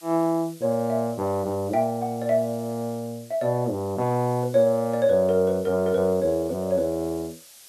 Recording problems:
hiss; SNR 23 dB

